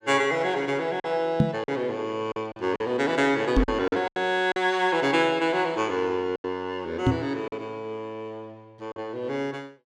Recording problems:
packet loss; 6% of the sound replaced, filled with silence
microphone bump; at 1.5 s, at 3.5 s and at 7 s; peak +9 dB vs average level

